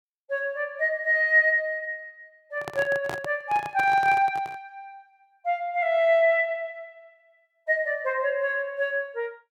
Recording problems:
microphone handling noise; from 2.5 to 4.5 s; peak -5 dB vs average level

